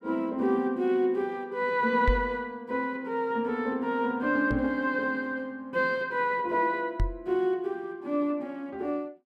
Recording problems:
knock on the microphone; at 2 s, at 4.5 s and at 7 s; peak +5 dB vs average level

